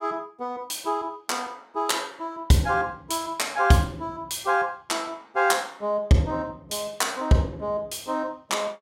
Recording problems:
none

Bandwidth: 16.5 kHz